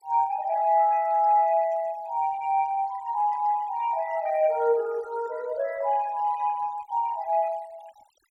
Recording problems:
denoising artefacts; signal-to-artefact ratio 24 dB

